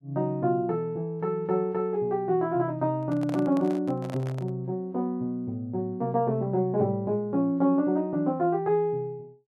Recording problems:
handling noise; from 3 to 4.5 s; peak -6 dB vs average level

